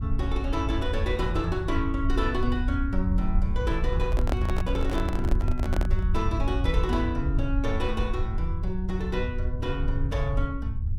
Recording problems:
low-frequency rumble; below 78 Hz, SNR -1 dB
microphone handling noise; from 4 to 6 s; peak +4 dB vs average level

